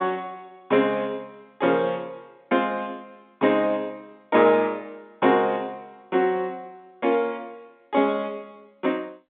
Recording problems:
telephone audio; 170 Hz to 3.7 kHz, G.711

